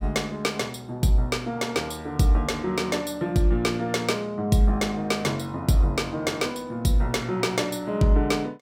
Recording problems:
none

